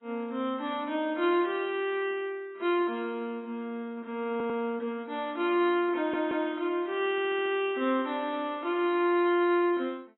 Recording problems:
lossy compression; AAC, log-spectral distance 2 dB, nothing above 3.2 kHz
stutter; at 4.5 s, at 6 s and at 7 s

